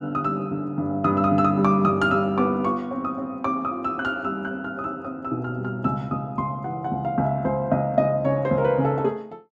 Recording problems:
none

